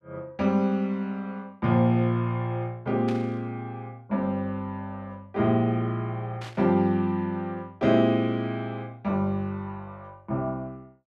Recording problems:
static burst; at 3 s and at 6.5 s; peak -9 dB vs average level

